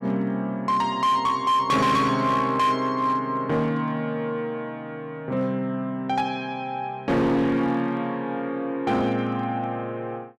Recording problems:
distorted audio; hard clipping, signal-to-distortion ratio 11 dB

